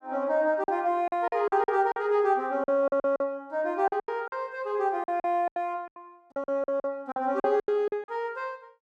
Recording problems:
packet loss; 14% of the sound replaced, filled with silence

